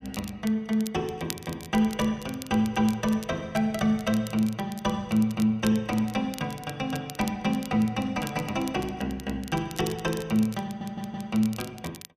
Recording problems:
crackling; vinyl, SNR 16 dB
audio stuttering; at 11 s

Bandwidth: 14.5 kHz